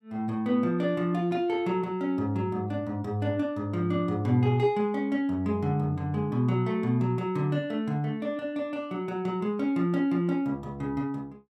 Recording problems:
none

